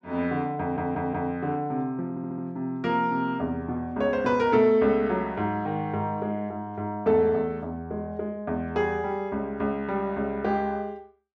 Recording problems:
audio stuttering; at 0.5 s and at 2 s

